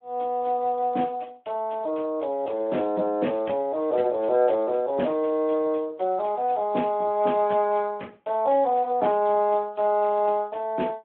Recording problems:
phone line; 190 Hz to 3.6 kHz, Speex

